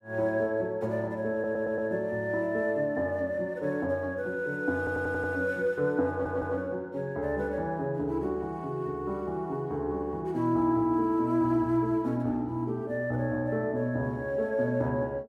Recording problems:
audio stuttering; at 1.5 s, at 5 s and at 6 s

